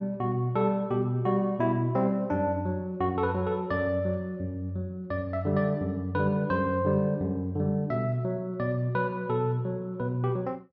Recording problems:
none

